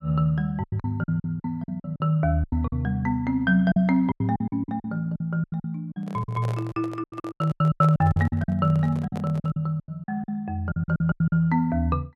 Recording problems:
lost packets; 17% of the sound replaced, filled with silence
handling noise; from 6 to 9.5 s; peak -7 dB vs average level

